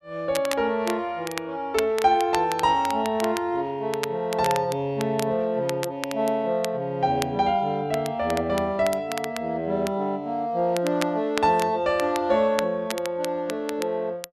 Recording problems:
crackling; vinyl, SNR 12 dB

